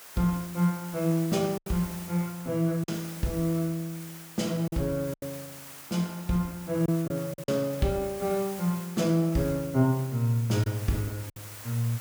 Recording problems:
background hiss; SNR 14 dB
packet loss; 4% of the sound replaced, filled with silence

